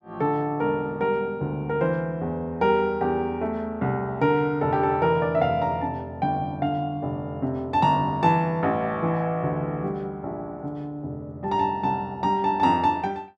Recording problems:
none

